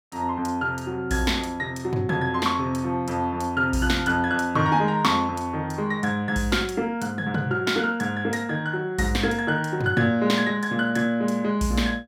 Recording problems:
none

